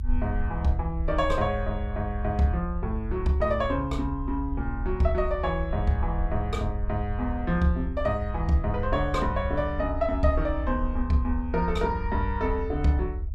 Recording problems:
rumble; below 74 Hz, SNR 5 dB

